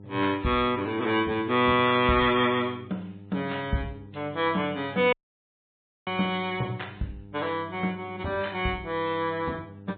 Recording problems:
treble cut off; nothing above 4 kHz
codec artefacts; MP3, log-spectral distance 4 dB
electrical hum; 50 Hz, harmonics up to 900 Hz, SNR 20 dB
audio cutting out; at 5 s for 1 s

